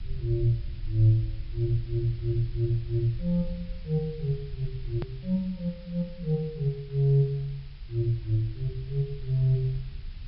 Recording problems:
treble missing; nothing above 5.3 kHz
background hiss; SNR 27 dB
rumble; below 64 Hz, SNR 13 dB
click at an edit; at 5 s

